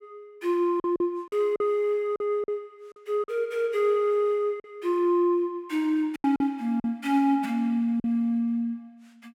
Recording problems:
lost packets; 6% of the sound replaced, filled with silence

